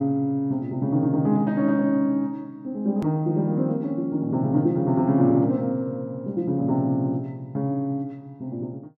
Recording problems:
click at an edit; at 3 s

